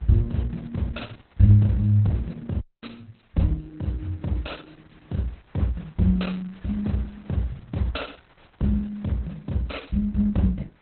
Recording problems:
codec artefacts; Opus, log-spectral distance 6 dB, nothing above 4.1 kHz
wind on the microphone; below 2.1 kHz, SNR 31 dB
audio cutting out; at 2.5 s

